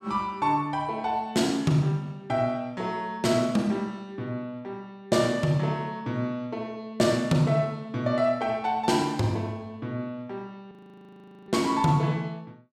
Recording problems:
audio freezing; at 11 s for 1 s

